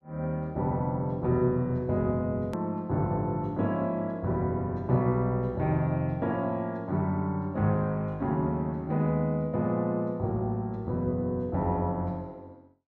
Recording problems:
edit click; at 2.5 s

